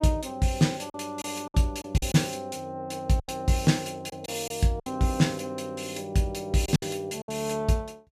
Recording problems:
lost packets; 7% of the sound replaced, filled with silence

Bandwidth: 14.5 kHz